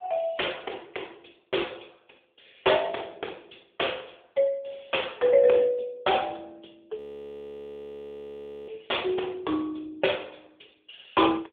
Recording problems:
telephone audio; 280 Hz to 3.6 kHz, AMR-NB
frozen audio; at 7 s for 1.5 s

